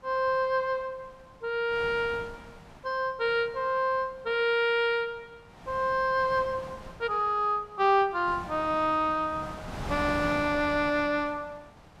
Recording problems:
wind on the microphone; below 1.1 kHz, SNR 15 dB

